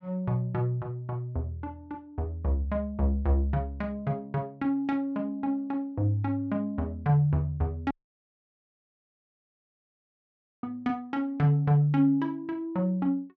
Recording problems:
dropout; at 8 s for 2.5 s

